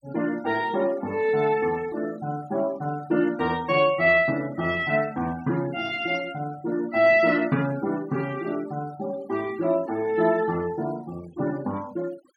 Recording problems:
noise reduction artefacts; signal-to-artefact ratio 22 dB

